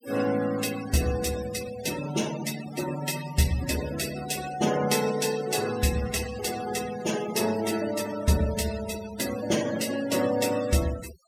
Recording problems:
denoising artefacts; signal-to-artefact ratio 11 dB

